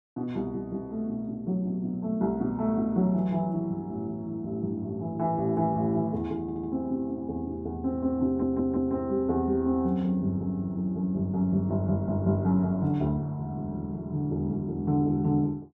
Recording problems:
audio stuttering; at 6.5 s and at 8.5 s

